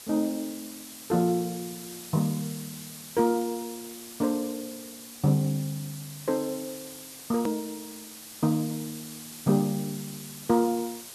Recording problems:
background hiss; slope 0 dB per octave, SNR 12 dB
hard cut with a click; at 7.5 s

